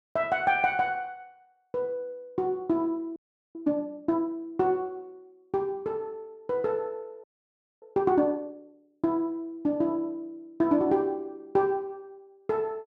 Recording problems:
audio freezing; at 3 s and at 7 s for 0.5 s

